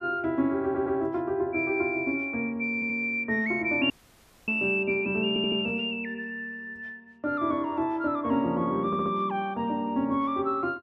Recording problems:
audio stuttering; 4 times, first at 0.5 s
audio cutting out; at 4 s for 0.5 s

